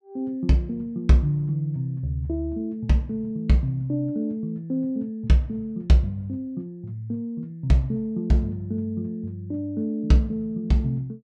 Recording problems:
none

